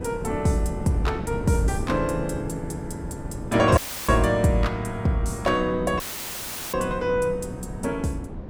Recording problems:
wind on the microphone; below 310 Hz, SNR 10 dB
dropout; at 4 s and at 6 s for 0.5 s; filled with static

